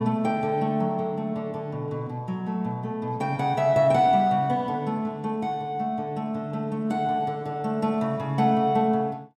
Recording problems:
none

